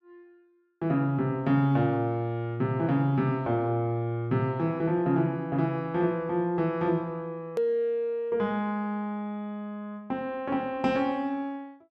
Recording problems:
click at an edit; at 7.5 s

